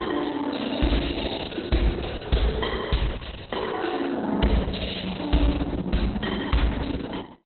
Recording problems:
lossy codec; Opus, log-spectral distance 9 dB, nothing above 4.1 kHz

